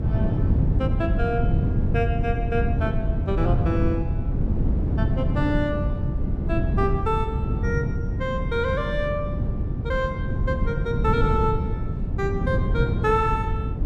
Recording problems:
low-frequency rumble; below 78 Hz, SNR 5 dB
wind noise; below 180 Hz, SNR -2 dB

